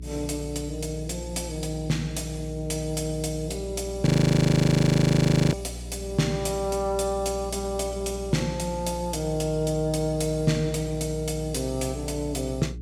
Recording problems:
hum; 60 Hz, harmonics up to 420 Hz, SNR 11 dB
frozen audio; at 4 s for 1.5 s

